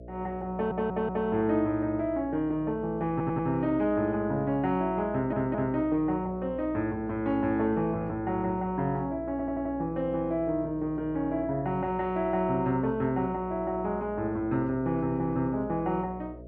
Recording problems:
electrical hum; 60 Hz, harmonics up to 660 Hz, SNR 16 dB
stutter; 4 times, first at 0.5 s

